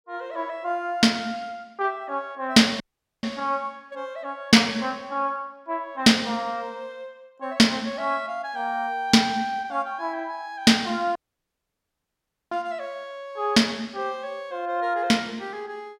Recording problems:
dropout; at 3 s and at 11 s for 1.5 s

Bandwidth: 16.5 kHz